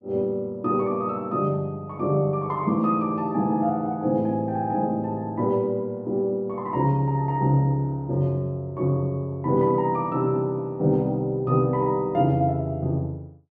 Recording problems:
none

